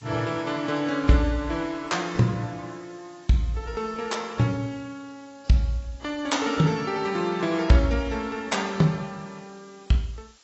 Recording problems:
lossy codec; AAC, log-spectral distance 5 dB, nothing above 7.8 kHz
background hiss; slope +1 dB per octave, SNR 29 dB

